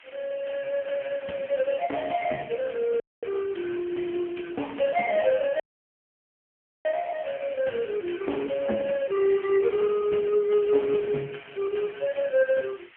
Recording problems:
telephone audio; 240 Hz to 3.1 kHz, AMR-NB
hiss; SNR 22 dB
dropout; at 3 s and at 5.5 s for 1.5 s

